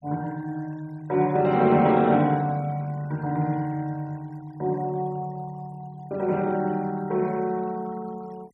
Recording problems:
noise reduction artefacts; signal-to-artefact ratio 25 dB

